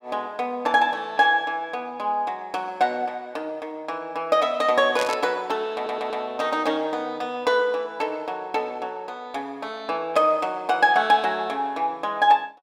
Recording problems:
burst of static; at 5 s; peak -2 dB vs average level
stutter; at 6 s

